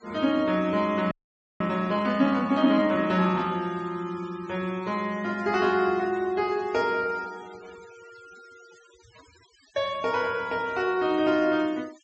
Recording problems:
treble missing; nothing above 8 kHz
denoising artefacts; signal-to-artefact ratio 24 dB
frozen audio; at 1 s

